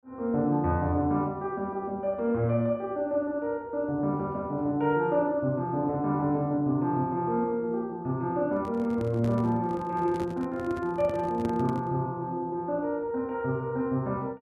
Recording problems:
microphone handling noise; from 8.5 to 12 s; peak -4 dB vs average level

